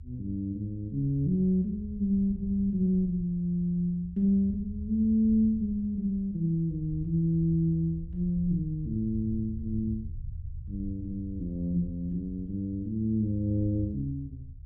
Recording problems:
rumble; below 92 Hz, SNR 13 dB

